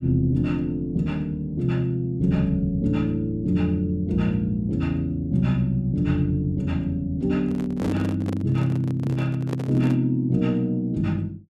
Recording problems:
handling noise; from 7.5 to 10 s; peak -4 dB vs average level

